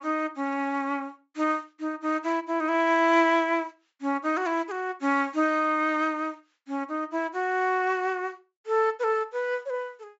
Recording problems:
low-pass filter; nothing above 8 kHz

